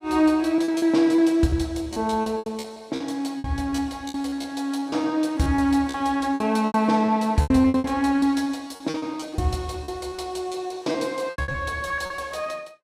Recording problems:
lost packets; 15% of the sound replaced, filled with repeated pitch periods

